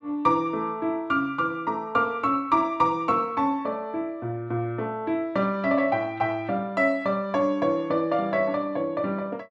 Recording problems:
none

